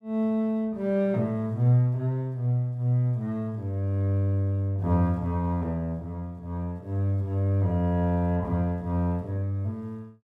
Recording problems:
none

